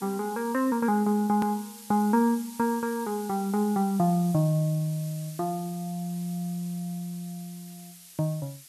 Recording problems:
background hiss; SNR 17 dB
click at an edit; at 1.5 s

